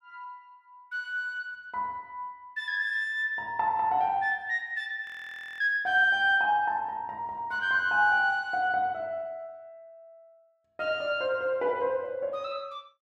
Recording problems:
frozen audio; at 5 s for 0.5 s

